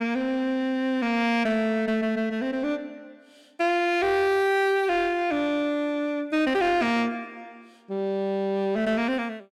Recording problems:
distorted audio; soft clipping, signal-to-distortion ratio 10 dB

